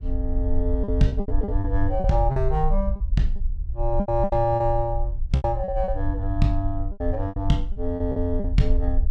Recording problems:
low-frequency rumble; below 54 Hz, SNR 3 dB
lost packets; 12% of the sound replaced, filled with repeated pitch periods

